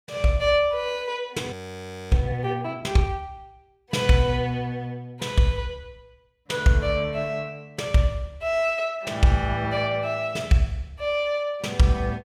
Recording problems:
audio freezing; at 1.5 s for 0.5 s

